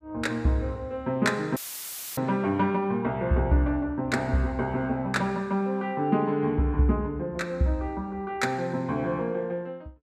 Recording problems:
dropout; at 1.5 s for 0.5 s; filled with static

